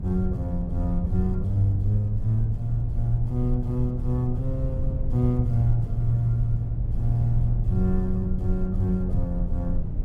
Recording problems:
electrical hum; 60 Hz, harmonics up to 660 Hz, SNR 30 dB
rumble; below 80 Hz, SNR 4 dB

